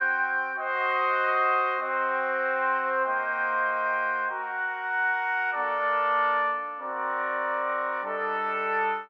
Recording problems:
none

